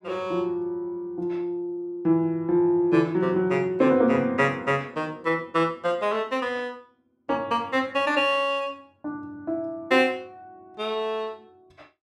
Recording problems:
none

